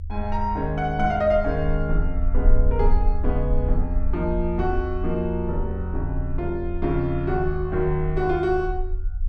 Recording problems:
rumble; below 54 Hz, strongest tone 20 Hz, SNR 3 dB

